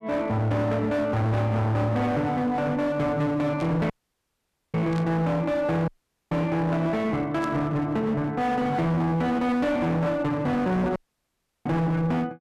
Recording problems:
distorted audio; hard clipping, uneven, signal-to-distortion ratio 7 dB
burst of static; at 3.5 s, at 5 s and at 7.5 s; peak -12 dB vs average level
dropout; at 4 s for 1 s, at 6 s and at 11 s for 0.5 s

